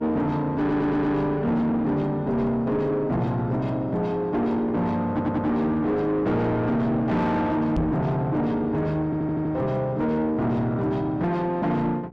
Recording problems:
distorted audio; soft clipping, signal-to-distortion ratio 8 dB
hum; 60 Hz, harmonics up to 1.3 kHz, SNR 25 dB
audio stuttering; at 0.5 s, at 5 s and at 9 s
microphone thump; at 8 s; peak +3 dB vs average level

